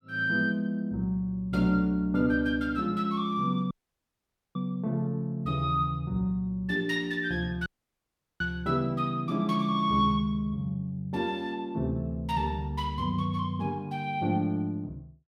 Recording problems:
dropout; at 3.5 s for 1 s and at 7.5 s for 0.5 s

